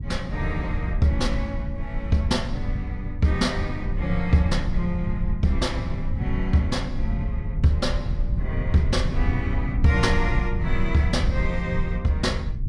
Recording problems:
low-frequency rumble; below 96 Hz, SNR 2 dB

